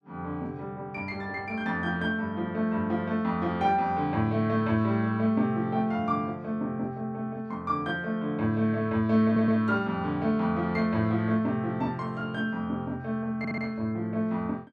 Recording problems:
audio stuttering; at 9.5 s and at 13 s

